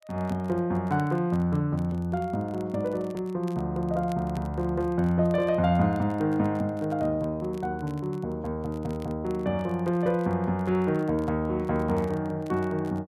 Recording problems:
crackling; vinyl, SNR 29 dB

